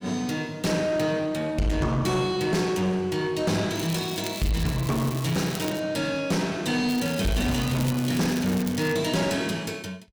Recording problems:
distorted audio; soft clipping, signal-to-distortion ratio 10 dB
crackling; from 4 to 6 s and from 7 to 9 s; loose cable, SNR 13 dB

